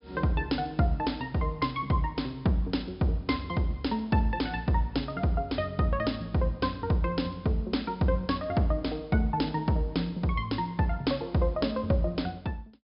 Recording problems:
treble cut off; nothing above 5.5 kHz

